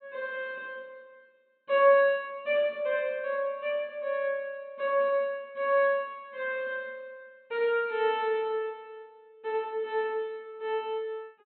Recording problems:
low-pass filter; nothing above 4 kHz

